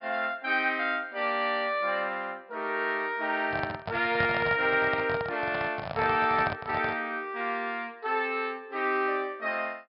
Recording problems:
treble missing; nothing above 5.5 kHz
microphone handling noise; from 3.5 to 7 s; peak -1 dB vs average level

